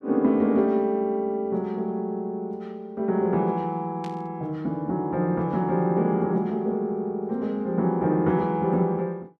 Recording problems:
burst of static; at 4 s; peak -14 dB vs average level

